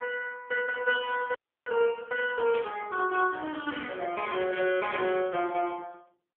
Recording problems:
telephone audio; 280 Hz to 3.4 kHz, AMR-NB
audio cutting out; at 1.5 s
burst of static; at 2.5 s and at 4.5 s; peak -9 dB vs average level

